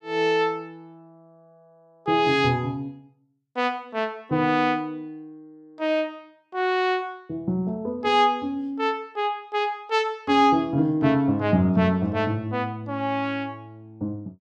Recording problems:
none

